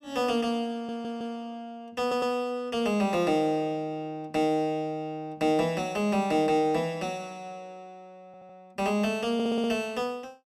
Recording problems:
audio stuttering; 4 times, first at 0.5 s

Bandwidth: 15.5 kHz